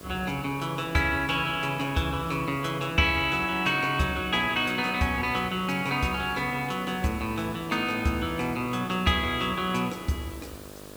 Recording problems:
hum; 50 Hz, harmonics up to 1.9 kHz, SNR 19 dB
background hiss; slope -2 dB per octave, SNR 20 dB

